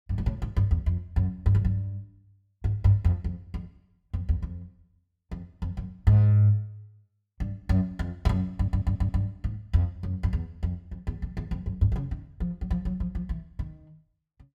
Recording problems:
stutter; at 8.5 s

